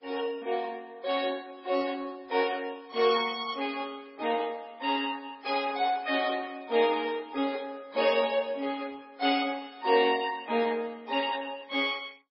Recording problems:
lossy codec; MP2, then MP3, log-spectral distance 4 dB, nothing above 4.5 kHz

